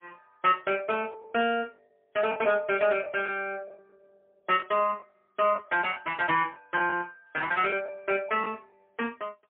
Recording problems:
telephone audio; 280 Hz to 3.2 kHz, AMR-NB, then MP3
lost packets; 7% of the sound replaced, filled with the last packet

